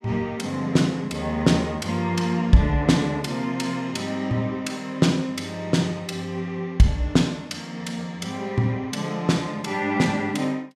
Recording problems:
none

